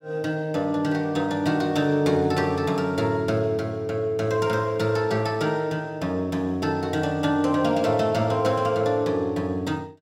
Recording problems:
none

